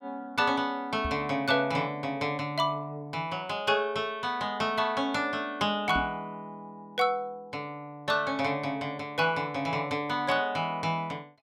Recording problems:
microphone thump; at 1 s and at 6 s; peak -3 dB vs average level

